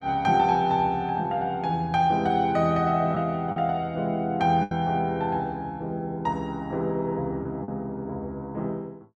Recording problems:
lost packets; 2% of the sound replaced, filled with the last packet

